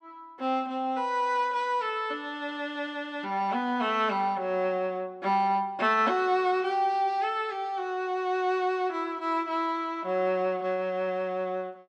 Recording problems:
none

